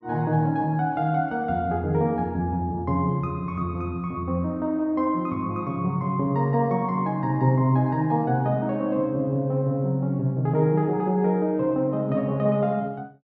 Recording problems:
none

